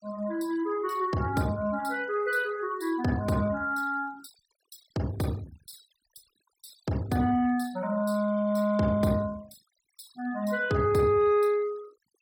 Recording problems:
denoising artefacts; signal-to-artefact ratio 23 dB

